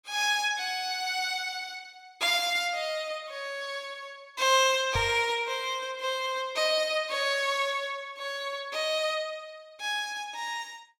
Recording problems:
microphone thump; at 5 s; peak -2 dB vs average level

